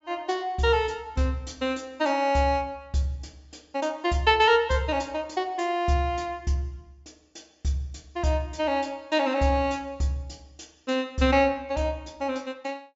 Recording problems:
treble missing; nothing above 8 kHz

